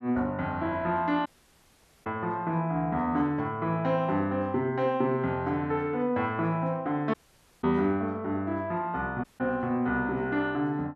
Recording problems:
dropout; at 1.5 s for 1 s, at 7 s and at 9 s

